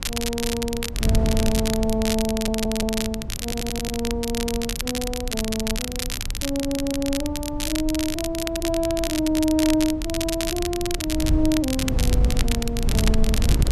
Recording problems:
wind on the microphone; below 92 Hz, SNR 4 dB
crackle; vinyl, SNR 4 dB
audio stuttering; at 2.5 s, at 3.5 s and at 6.5 s

